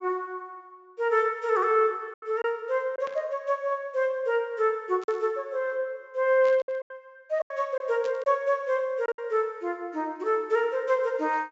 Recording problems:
treble missing; nothing above 8 kHz
lost packets; 5% of the sound replaced, filled with silence
burst of static; 4 times, first at 3 s; peak -13 dB vs average level

